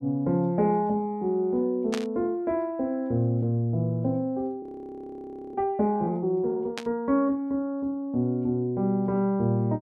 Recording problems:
static burst; at 2 s and at 7 s; peak -3 dB vs average level
audio freezing; at 4.5 s for 1 s

